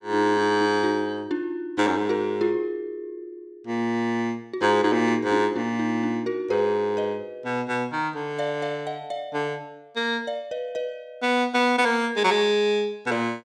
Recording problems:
none

